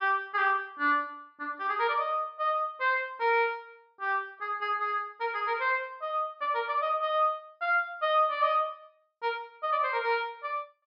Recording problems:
low-pass filter; nothing above 5.5 kHz

